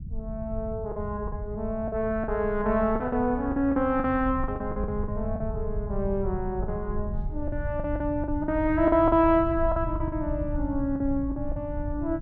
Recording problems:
rumble; below 96 Hz, SNR 8 dB
packet loss; 10% of the sound replaced, filled with the last packet

